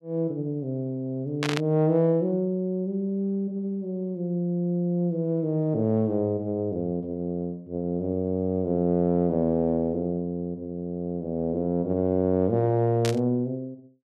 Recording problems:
burst of static; at 1.5 s and at 13 s; peak 0 dB vs average level

